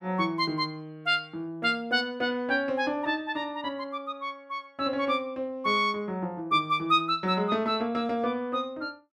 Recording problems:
none

